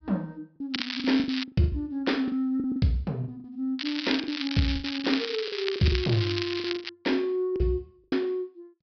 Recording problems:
low-pass filter; nothing above 5.5 kHz
lost packets; 12% of the sound replaced, filled with the last packet
crackling; at 0.5 s and from 4 to 7 s; loose cable, SNR 5 dB

